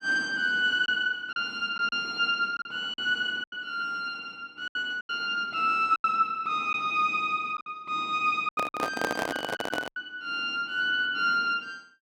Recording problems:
lost packets; 7% of the sound replaced, filled with silence
microphone handling noise; from 8.5 to 10 s; peak +2 dB vs average level

